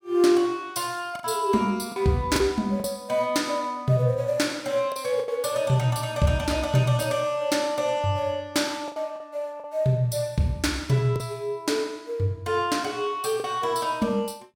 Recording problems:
packet loss; 4% of the sound replaced, filled with the last packet

